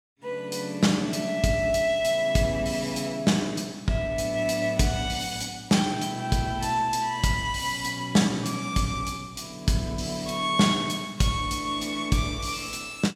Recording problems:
none

